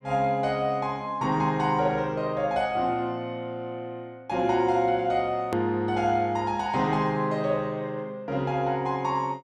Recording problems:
edit click; at 5.5 s

